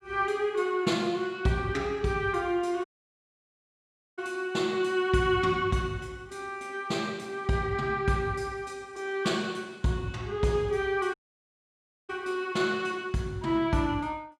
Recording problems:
dropout; at 3 s for 1.5 s and at 11 s for 1 s

